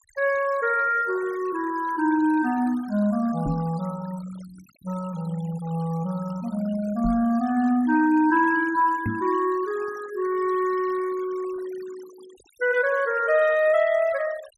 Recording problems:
noise reduction artefacts; signal-to-artefact ratio 22 dB
knock on the microphone; at 3.5 s, at 7 s and at 9 s; peak 0 dB vs average level

